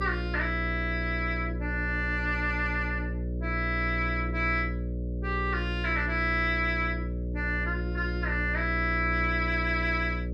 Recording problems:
hum; 60 Hz, harmonics up to 600 Hz, SNR 4 dB

